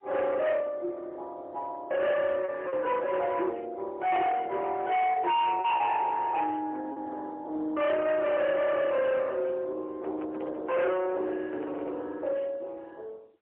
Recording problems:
phone line; 950 Hz to 3.4 kHz, AMR-NB, then MP3
distorted audio; soft clipping, signal-to-distortion ratio 7 dB
lost packets; 1.8% of the sound replaced, filled with repeated pitch periods
microphone handling noise; from 10 to 12 s; peak -8 dB vs average level

